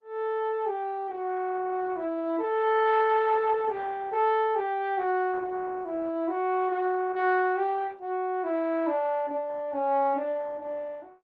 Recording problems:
lossy compression; Opus, log-spectral distance 2 dB

